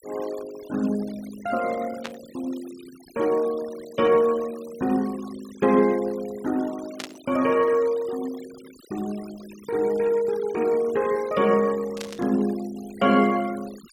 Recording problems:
denoising artefacts; signal-to-artefact ratio 21 dB
static burst; at 2 s, at 7 s and at 12 s; peak -5 dB vs average level

